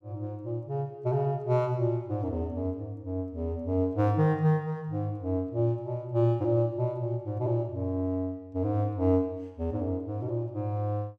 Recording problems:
none

